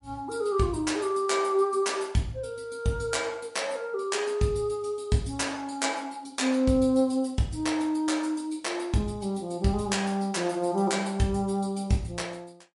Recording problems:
lossy codec; MP3, log-spectral distance 3 dB, nothing above 11 kHz

